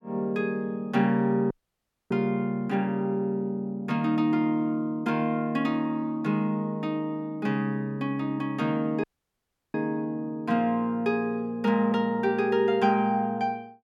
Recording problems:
audio cutting out; at 1.5 s for 0.5 s and at 9 s for 0.5 s

